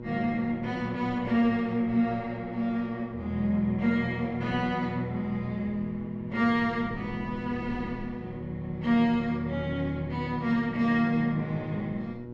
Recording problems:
mains hum; 60 Hz, harmonics up to 1.1 kHz, SNR 12 dB
wind on the microphone; below 310 Hz, SNR 20 dB

